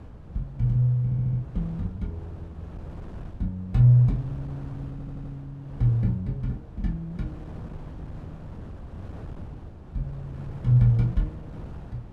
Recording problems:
wind on the microphone; below 200 Hz, SNR 16 dB
audio stuttering; at 1 s and at 5 s

